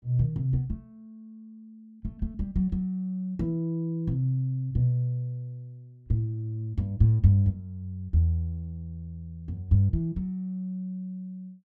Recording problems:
none

